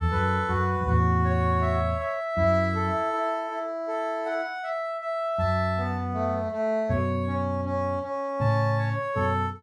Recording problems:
none

